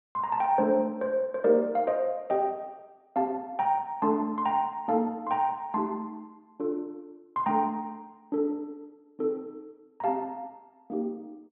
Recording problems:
treble missing; nothing above 4 kHz

